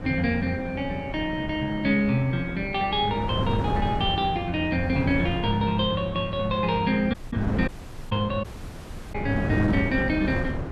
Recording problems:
wind on the microphone; below 360 Hz, SNR 7 dB
dropout; at 7 s, at 7.5 s and at 8.5 s for 0.5 s

